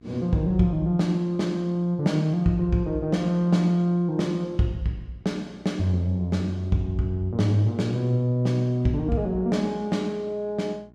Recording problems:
hum; 60 Hz, harmonics up to 1.1 kHz, SNR 29 dB

